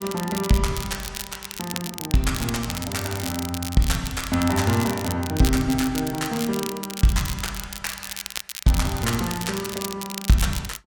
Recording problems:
crackling; vinyl, SNR 8 dB

